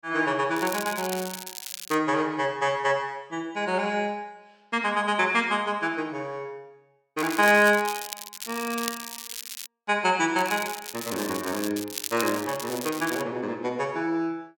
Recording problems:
crackling; from 0.5 to 2 s, from 7 to 9.5 s and from 10 to 13 s; loose cable, SNR 9 dB

